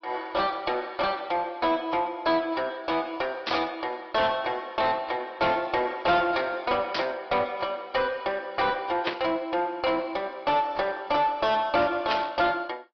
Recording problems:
treble cut off; nothing above 5 kHz
lossy compression; AAC, log-spectral distance 2 dB
distortion; soft clipping, signal-to-distortion ratio 10 dB
static burst; 4 times, first at 3.5 s; peak +2 dB vs average level

